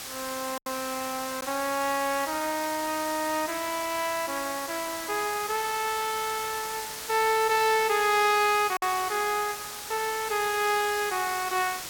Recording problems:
hiss; slope 0 dB per octave, SNR 8 dB
packet loss; 1.2% of the sound replaced, filled with silence

